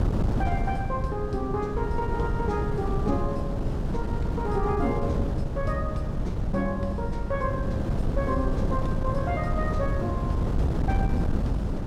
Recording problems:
wind on the microphone; below 200 Hz, SNR -3 dB

